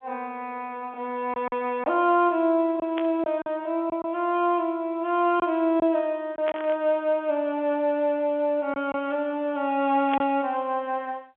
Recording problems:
telephone audio; 260 Hz to 3.6 kHz, G.711
packet loss; 3% of the sound replaced, filled with silence
static burst; at 3 s, at 6.5 s and at 10 s; peak -5 dB vs average level

